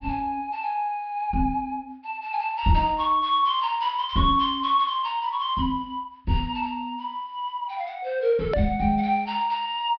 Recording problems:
low-pass filter; nothing above 5.5 kHz
click at an edit; at 8.5 s

